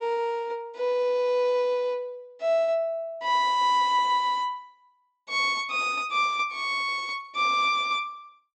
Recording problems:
treble missing; nothing above 8 kHz

